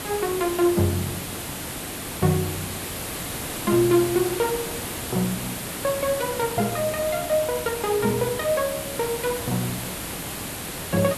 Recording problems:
background hiss; slope -3 dB per octave, SNR 6 dB

